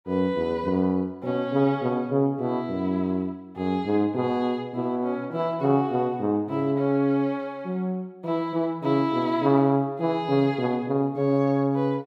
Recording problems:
none

